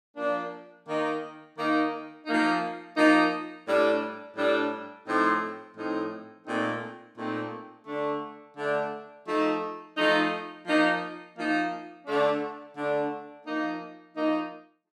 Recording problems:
none

